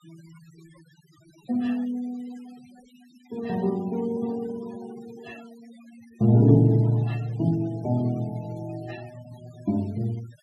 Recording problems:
denoising artefacts; signal-to-artefact ratio 25 dB

